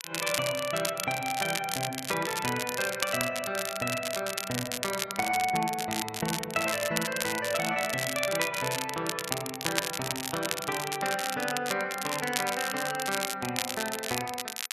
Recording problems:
crackle; vinyl, SNR 3 dB

